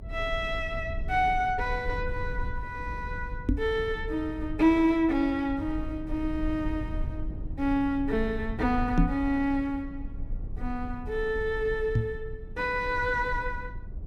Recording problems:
rumble; below 72 Hz, SNR 10 dB
knock on the microphone; at 3.5 s, at 9 s and at 12 s; peak +8 dB vs average level

